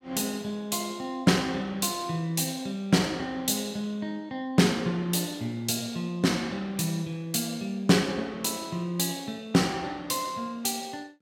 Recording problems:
none

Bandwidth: 16.5 kHz